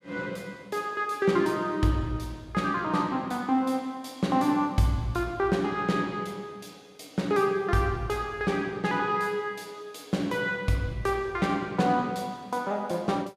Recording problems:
none

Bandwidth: 15.5 kHz